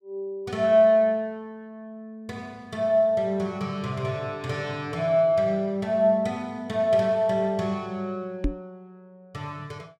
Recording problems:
microphone thump; at 8.5 s; peak +1 dB vs average level

